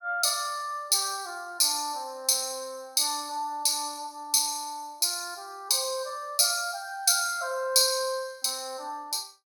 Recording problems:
none

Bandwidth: 17.5 kHz